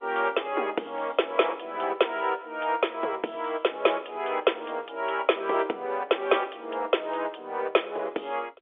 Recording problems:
phone line; 320 Hz to 3.6 kHz, G.711

